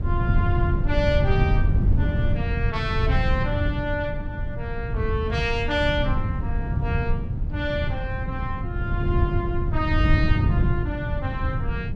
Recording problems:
low-frequency rumble; below 130 Hz, SNR -3 dB

